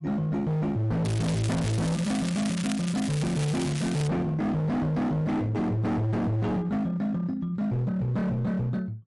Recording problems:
lossy codec; MP3, log-spectral distance 2 dB, nothing above 11 kHz
distorted audio; hard clipping, signal-to-distortion ratio 7 dB
crackling; from 1 to 4 s; loose cable, SNR 11 dB

